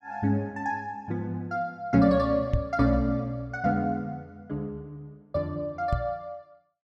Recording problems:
knock on the microphone; at 2.5 s and at 6 s; peak +5 dB vs average level

